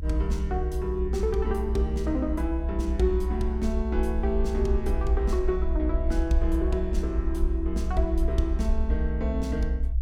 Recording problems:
rumble; below 64 Hz, SNR 0 dB

